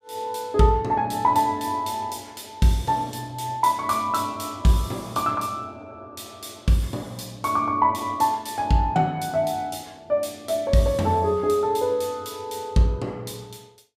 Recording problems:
none

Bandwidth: 15.5 kHz